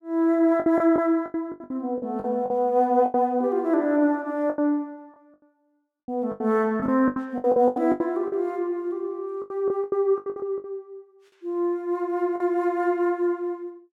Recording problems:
packet loss; 13% of the sound replaced, filled with the last packet

